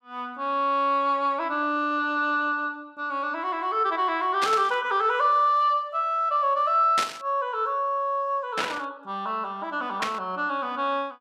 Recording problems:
burst of static; 4 times, first at 4.5 s; peak +2 dB vs average level

